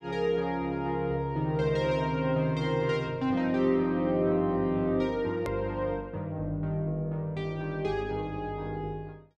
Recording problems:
edit click; at 5.5 s

